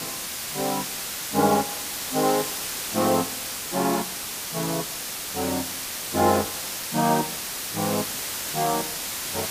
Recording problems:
background hiss; slope 0 dB per octave, SNR 2 dB

